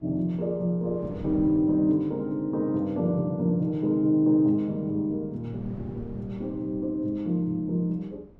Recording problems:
wind noise; below 300 Hz, SNR 20 dB

